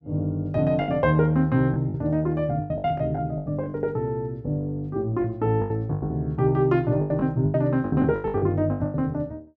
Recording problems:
packet loss; 14% of the sound replaced, filled with the last packet

